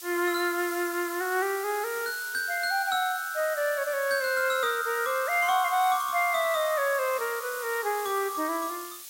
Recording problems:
hiss; slope +4 dB per octave, SNR 12 dB

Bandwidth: 16 kHz